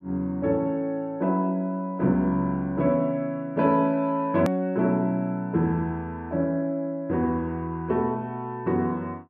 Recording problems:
hard cut with a click; at 4.5 s

